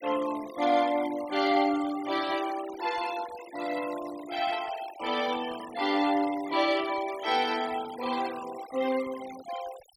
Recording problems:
denoising artefacts; signal-to-artefact ratio 14 dB

